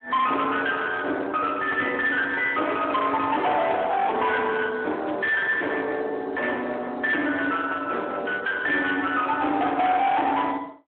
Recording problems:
phone line; 260 Hz to 3.5 kHz, Speex
distortion; hard clipping, uneven, signal-to-distortion ratio 7 dB
static burst; 4 times, first at 1 s; peak -15 dB vs average level

